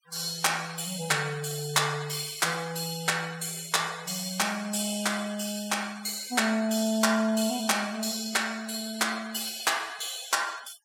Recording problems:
noise reduction artefacts; signal-to-artefact ratio 20 dB

